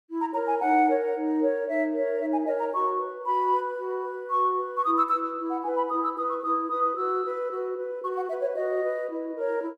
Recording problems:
none

